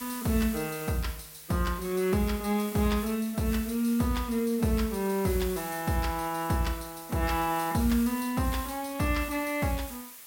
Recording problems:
hiss; slope +1 dB per octave, SNR 13 dB

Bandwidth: 16.5 kHz